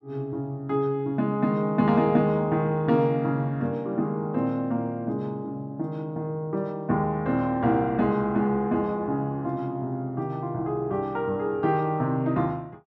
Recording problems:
none

